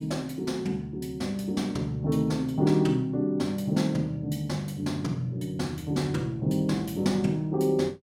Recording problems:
none

